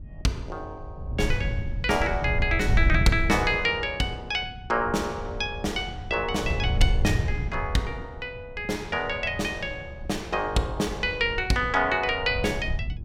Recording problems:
wind noise; below 100 Hz, SNR 5 dB

